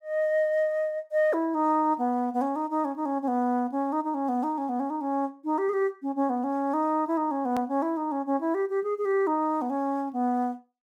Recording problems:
click at an edit; at 7.5 s

